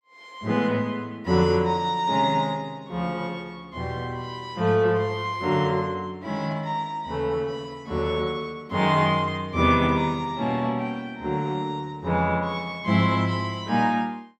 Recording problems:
none

